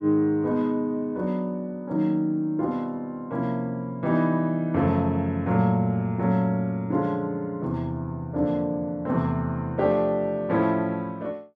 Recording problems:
none

